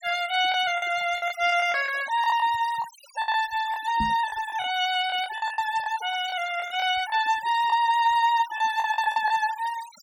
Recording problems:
noise reduction artefacts; signal-to-artefact ratio 16 dB
lost packets; 9% of the sound replaced, filled with the last packet
knock on the microphone; at 4 s; peak -4 dB vs average level

